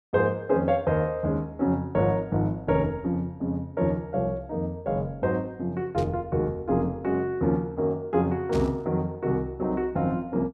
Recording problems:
static burst; at 6 s and at 8.5 s; peak -10 dB vs average level

